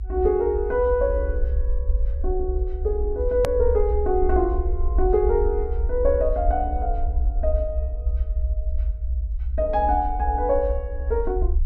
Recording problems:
rumble; below 64 Hz, SNR 3 dB
click at an edit; at 3.5 s

